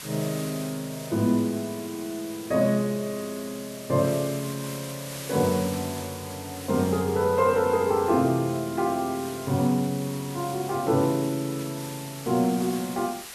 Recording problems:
hiss; slope 0 dB per octave, SNR 13 dB

